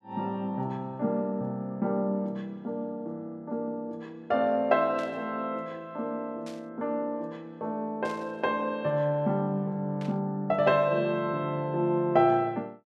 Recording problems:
burst of static; 4 times, first at 5 s; peak -13 dB vs average level

